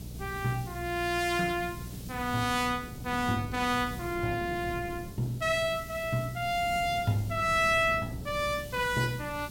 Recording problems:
hum; 60 Hz, harmonics up to 480 Hz, SNR 16 dB
hiss; slope +3 dB per octave, SNR 19 dB
wind on the microphone; below 260 Hz, SNR 15 dB

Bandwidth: 16.5 kHz